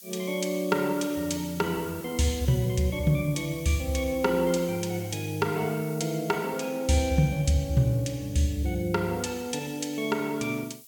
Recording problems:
hiss; SNR 18 dB

